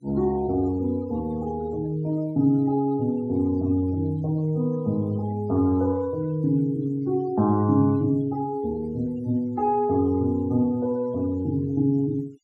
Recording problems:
noise reduction artefacts; signal-to-artefact ratio 27 dB

